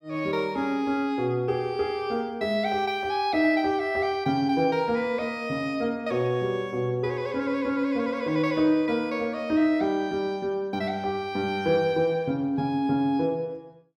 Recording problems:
none

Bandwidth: 16 kHz